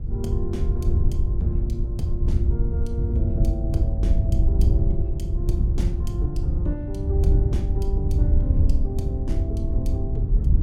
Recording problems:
wind noise; below 88 Hz, SNR -9 dB

